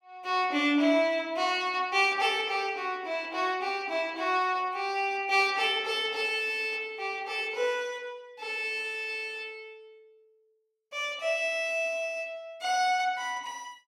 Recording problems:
none

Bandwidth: 16.5 kHz